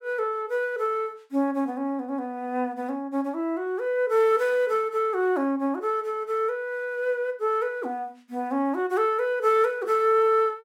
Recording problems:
none

